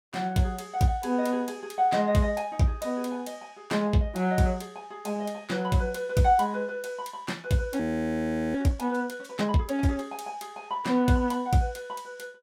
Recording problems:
audio freezing; at 8 s for 0.5 s

